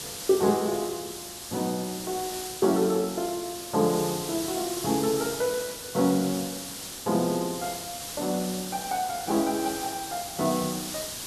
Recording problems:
hiss; SNR 7 dB

